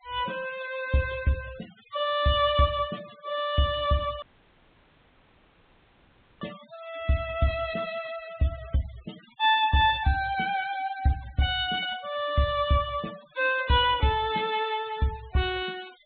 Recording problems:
low-pass filter; nothing above 4 kHz
denoising artefacts; signal-to-artefact ratio 20 dB
dropout; at 4 s for 2 s

